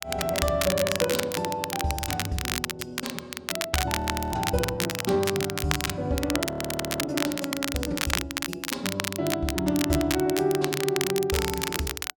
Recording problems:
crackle; vinyl, SNR 2 dB
audio freezing; at 4 s and at 6.5 s for 0.5 s

